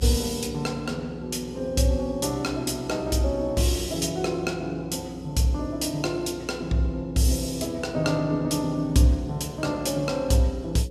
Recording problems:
hum; 60 Hz, harmonics up to 540 Hz, SNR 16 dB

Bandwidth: 14.5 kHz